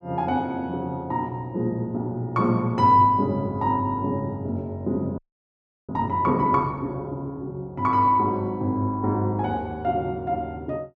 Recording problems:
frozen audio; at 5 s for 0.5 s

